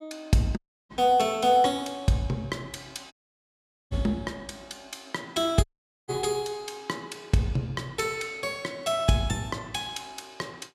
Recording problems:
audio cutting out; at 0.5 s, at 3 s for 1 s and at 5.5 s

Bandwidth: 14.5 kHz